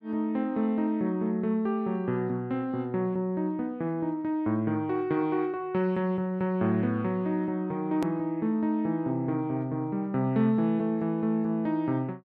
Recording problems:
hard cut with a click; at 8 s

